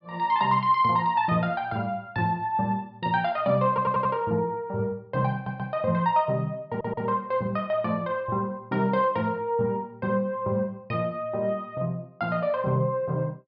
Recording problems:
treble missing; nothing above 5.5 kHz
stutter; at 3.5 s, at 5.5 s and at 6.5 s

